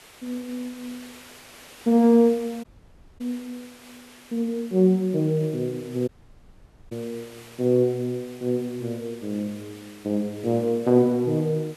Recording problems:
background hiss; slope -2 dB per octave, SNR 22 dB
dropout; at 2.5 s for 0.5 s and at 6 s for 1 s

